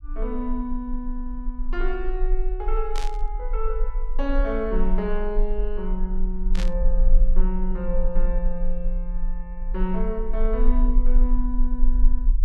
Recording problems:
low-frequency rumble; below 34 Hz, strongest tone 20 Hz, SNR -3 dB
static burst; at 3 s and at 6.5 s; peak -1 dB vs average level

